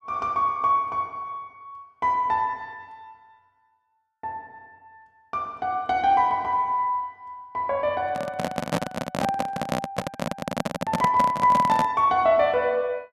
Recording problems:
handling noise; from 8 to 12 s; peak +3 dB vs average level

